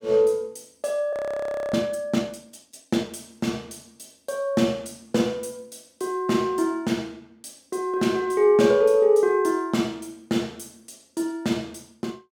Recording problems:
frozen audio; at 1 s for 0.5 s

